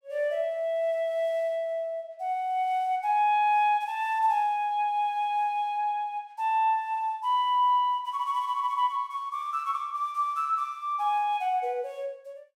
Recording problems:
none

